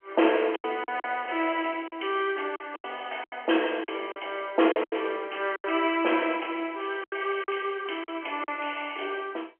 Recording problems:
phone line; 280 Hz to 3.2 kHz, G.711
packet loss; 9% of the sound replaced, filled with silence

